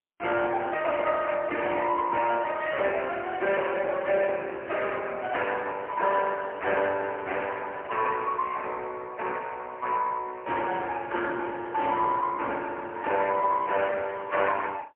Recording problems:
phone line; 300 Hz to 3.1 kHz, AMR-NB, then MP3

